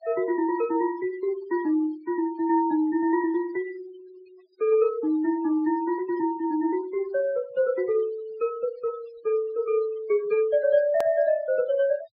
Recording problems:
low-pass filter; nothing above 5.5 kHz
noise reduction artefacts; signal-to-artefact ratio 22 dB
edit click; at 11 s

